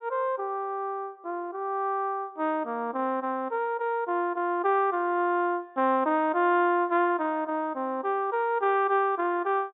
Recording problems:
low-pass filter; nothing above 4 kHz

